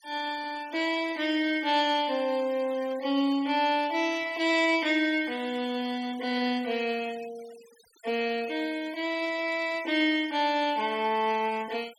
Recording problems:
denoising artefacts; signal-to-artefact ratio 21 dB

